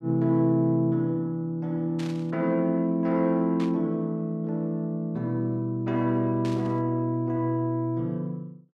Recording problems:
burst of static; at 2 s, at 3.5 s and at 6.5 s; peak -11 dB vs average level

